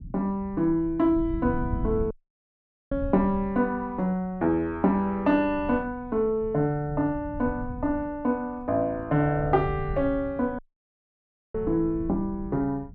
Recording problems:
rumble; below 130 Hz, SNR 13 dB
dropout; at 2 s for 1 s and at 11 s for 1 s

